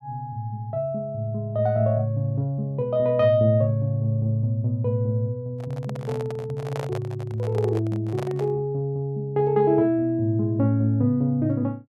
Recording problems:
handling noise; from 5.5 to 8.5 s; peak -5 dB vs average level

